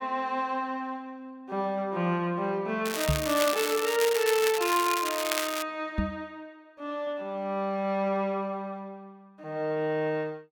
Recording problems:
crackling; from 3 to 5.5 s; loose cable, SNR 3 dB
knock on the microphone; at 3 s and at 6 s; peak +5 dB vs average level

